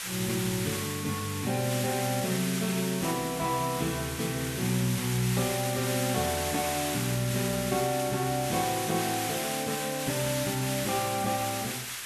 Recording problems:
hiss; SNR 3 dB

